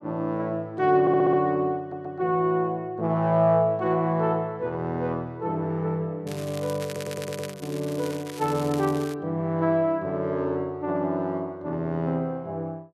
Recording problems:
audio stuttering; at 1 s, at 2 s and at 7 s
crackle; from 6.5 to 9 s; loose cable, SNR 15 dB

